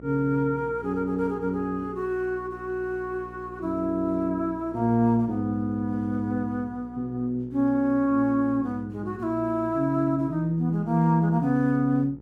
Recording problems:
electrical hum; 60 Hz, harmonics up to 900 Hz, SNR 20 dB

